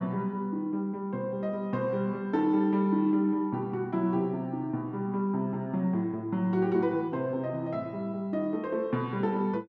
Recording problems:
none

